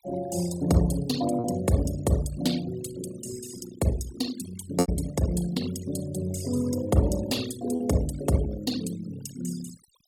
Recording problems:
denoising artefacts; signal-to-artefact ratio 12 dB
packet loss; 1.6% of the sound replaced, filled with repeated pitch periods

